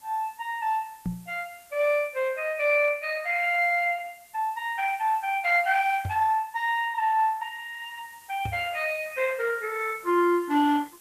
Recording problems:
lossy compression; Opus, log-spectral distance 3 dB
hiss; slope 0 dB per octave, SNR 26 dB
microphone bump; at 1 s, at 6 s and at 8.5 s; peak -1 dB vs average level

